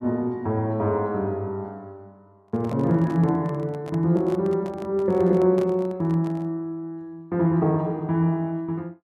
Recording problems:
handling noise; from 2.5 to 6.5 s; peak -9 dB vs average level

